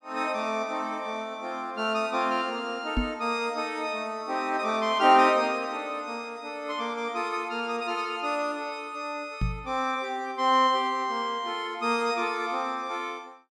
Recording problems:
knock on the microphone; at 3 s and at 9.5 s; peak +3 dB vs average level

